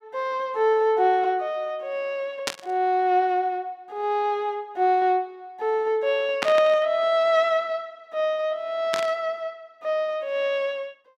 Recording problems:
burst of static; at 2.5 s, at 6.5 s and at 9 s; peak +2 dB vs average level

